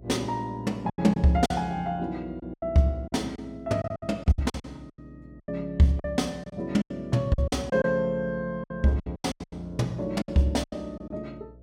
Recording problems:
hum; 60 Hz, harmonics up to 660 Hz, SNR 22 dB
packet loss; 14% of the sound replaced, filled with silence

